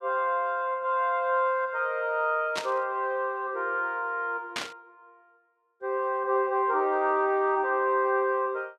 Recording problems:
static burst; at 2.5 s and at 4.5 s; peak 0 dB vs average level

